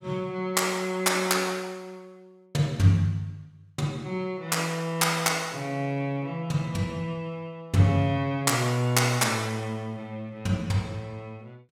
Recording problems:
none

